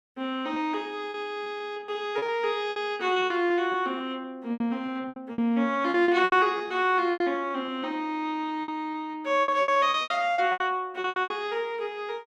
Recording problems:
packet loss; 15% of the sound replaced, filled with repeated pitch periods

